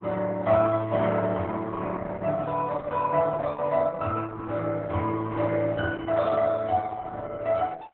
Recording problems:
codec artefacts; AAC, then Opus, log-spectral distance 3 dB, nothing above 3.6 kHz

